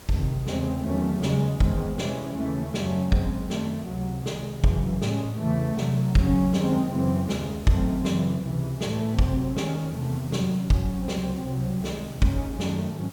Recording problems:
background hiss; slope -4 dB per octave, SNR 19 dB

